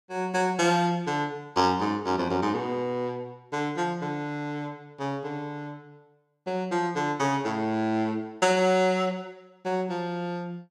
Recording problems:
none

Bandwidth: 15.5 kHz